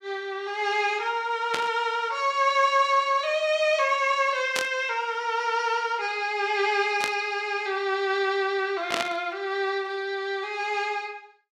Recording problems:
burst of static; 4 times, first at 1.5 s; peak +2 dB vs average level

